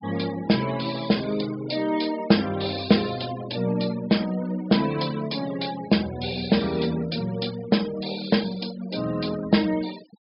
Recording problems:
low-pass filter; nothing above 5.5 kHz
denoising artefacts; signal-to-artefact ratio 17 dB

